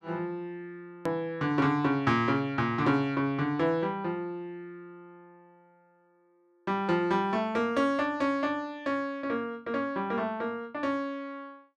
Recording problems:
hard cut with a click; at 1 s

